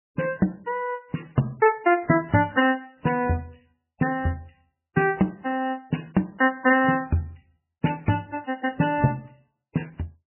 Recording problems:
codec artefacts; MP3, then MP3, log-spectral distance 6 dB, nothing above 2.9 kHz

